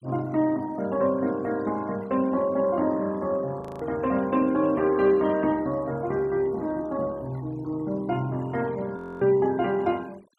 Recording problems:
denoising artefacts; signal-to-artefact ratio 25 dB
frozen audio; at 3.5 s and at 9 s

